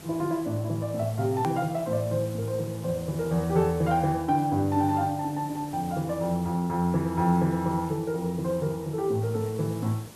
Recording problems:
background hiss; slope -4 dB per octave, SNR 19 dB
click at an edit; at 1.5 s

